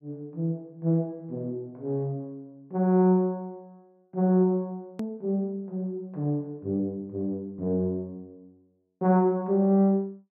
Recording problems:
edit click; at 5 s

